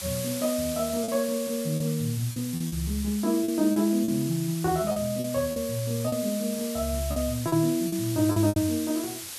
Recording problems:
background hiss; slope +2 dB per octave, SNR 9 dB
packet loss; 8% of the sound replaced, filled with repeated pitch periods

